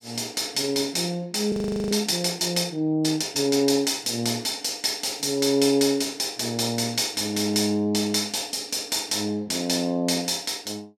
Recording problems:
frozen audio; at 1.5 s

